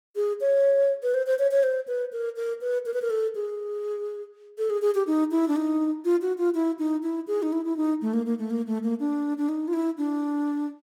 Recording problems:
none

